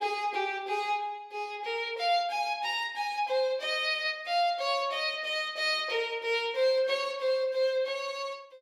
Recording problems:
none

